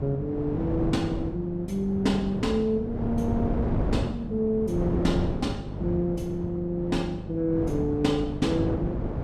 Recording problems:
mains hum; 50 Hz, harmonics up to 600 Hz, SNR 12 dB
wind noise; below 360 Hz, SNR 4 dB

